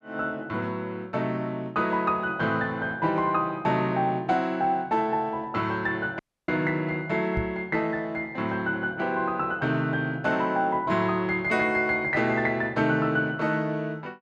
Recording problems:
dropout; at 6 s
knock on the microphone; at 7.5 s; peak -1 dB vs average level

